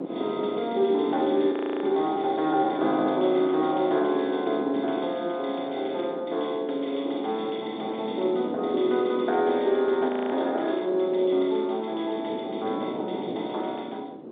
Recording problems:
telephone audio; 260 Hz to 3.6 kHz, G.711
wind on the microphone; below 480 Hz, SNR 10 dB
audio freezing; at 1.5 s and at 10 s

